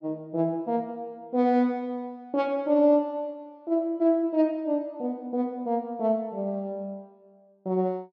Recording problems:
none

